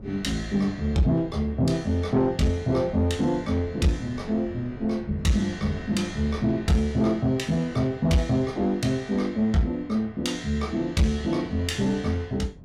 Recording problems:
distortion; soft clipping, signal-to-distortion ratio 12 dB
wind noise; below 260 Hz, SNR 19 dB

